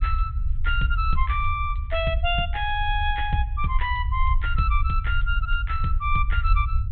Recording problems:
treble cut off; nothing above 4 kHz
rumble; below 64 Hz, SNR 1 dB

